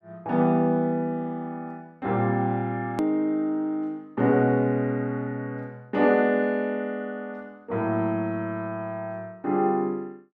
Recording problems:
edit click; at 3 s

